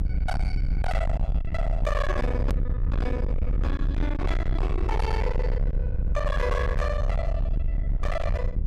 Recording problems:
distortion; hard clipping, uneven, signal-to-distortion ratio 4 dB
hum; 60 Hz, harmonics up to 600 Hz, SNR 11 dB
rumble; below 76 Hz, SNR -4 dB
hard cut with a click; at 2.5 s

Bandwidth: 14.5 kHz